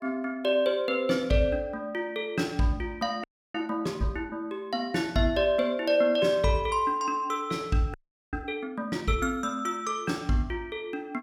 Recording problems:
frozen audio; at 3 s and at 8 s

